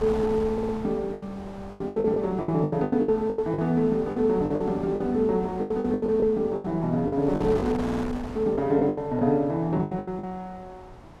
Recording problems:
wind noise; below 850 Hz, SNR 15 dB
lost packets; 16% of the sound replaced, filled with the last packet
stutter; at 0.5 s and at 8 s

